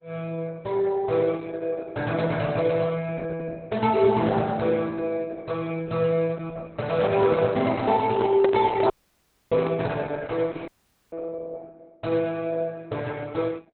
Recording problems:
lossy codec; Opus, log-spectral distance 3 dB, nothing above 4.1 kHz
handling noise; from 7 to 10 s; peak +1 dB vs average level
audio cutting out; at 9 s for 0.5 s and at 11 s

